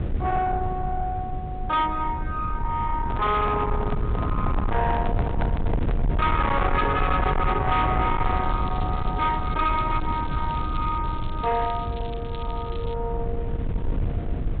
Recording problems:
treble cut off; nothing above 4 kHz
distorted audio; soft clipping, signal-to-distortion ratio 8 dB
rumble; below 180 Hz, SNR 3 dB
handling noise; from 3 to 6 s; peak -1 dB vs average level
crackle; from 8 to 11 s and from 11 to 13 s; loose cable, SNR 21 dB

